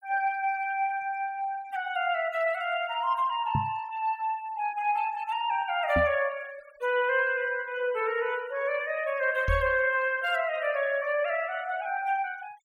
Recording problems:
noise reduction artefacts; signal-to-artefact ratio 23 dB
knock on the microphone; at 3.5 s, at 6 s and at 9.5 s; peak +2 dB vs average level

